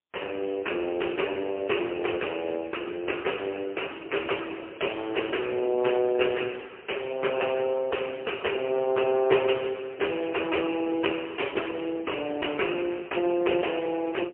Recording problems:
telephone audio; 300 Hz to 3.1 kHz, AMR-NB, then MP3

